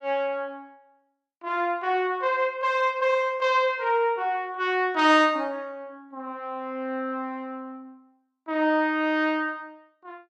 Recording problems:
none

